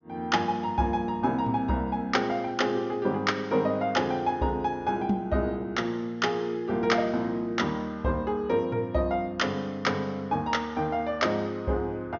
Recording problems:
low-pass filter; nothing above 6.7 kHz

